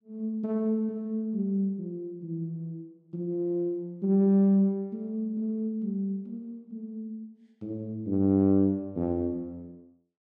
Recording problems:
none

